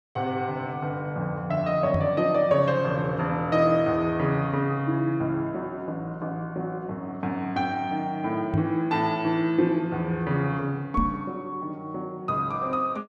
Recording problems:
knock on the microphone; at 2 s, at 8.5 s and at 11 s; peak +4 dB vs average level

